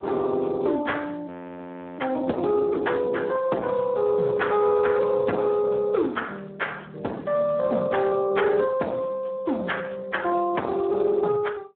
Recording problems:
phone line; 240 Hz to 3.4 kHz, Speex
distortion; hard clipping, signal-to-distortion ratio 10 dB
frozen audio; at 1.5 s for 0.5 s

